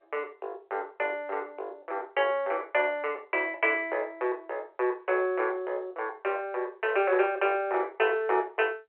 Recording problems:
telephone audio; 320 Hz to 3.2 kHz, G.711

